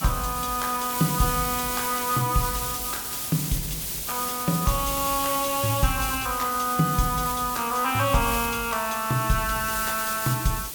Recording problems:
background hiss; SNR 3 dB

